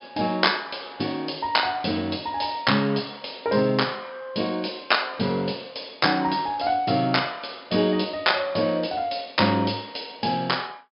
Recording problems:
low-pass filter; nothing above 5.5 kHz

